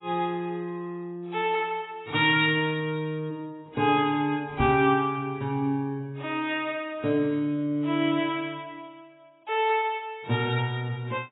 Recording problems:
lossy codec; AAC, log-spectral distance 3 dB, nothing above 3.4 kHz
microphone thump; at 4.5 s; peak +2 dB vs average level

